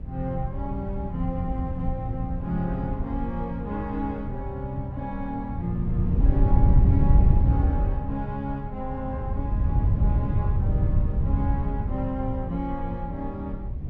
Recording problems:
low-frequency rumble; below 90 Hz, SNR 14 dB
wind noise; below 110 Hz, SNR -5 dB

